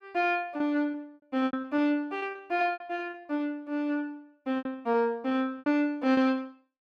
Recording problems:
packet loss; 12% of the sound replaced, filled with repeated pitch periods

